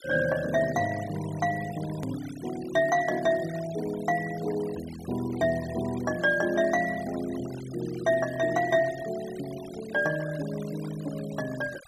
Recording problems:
denoising artefacts; signal-to-artefact ratio 17 dB
click at an edit; at 2 s

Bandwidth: 14.5 kHz